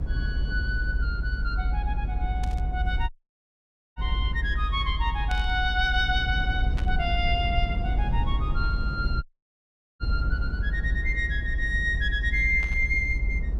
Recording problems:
rumble; below 66 Hz, strongest tone 48 Hz, SNR 0 dB
burst of static; 4 times, first at 2.5 s; peak -7 dB vs average level
audio cutting out; at 3 s for 1 s and at 9 s for 1 s

